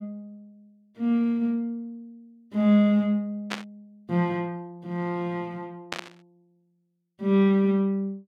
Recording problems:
static burst; at 3.5 s and at 6 s; peak -2 dB vs average level

